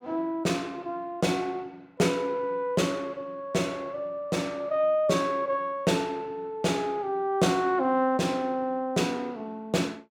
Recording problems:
none

